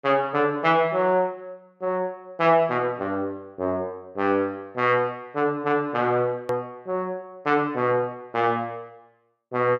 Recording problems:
edit click; at 6.5 s

